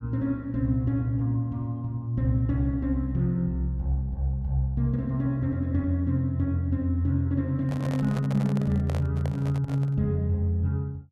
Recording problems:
handling noise; from 7.5 to 10 s; peak -6 dB vs average level

